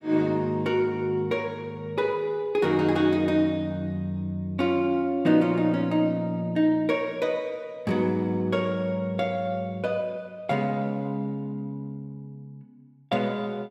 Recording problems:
none

